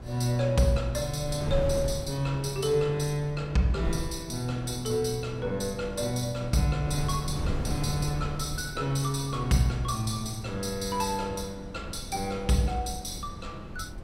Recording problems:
wind on the microphone; below 200 Hz, SNR 10 dB

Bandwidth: 16 kHz